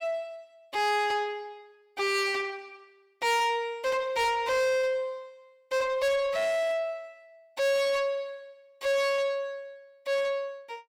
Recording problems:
distorted audio; soft clipping, signal-to-distortion ratio 7 dB

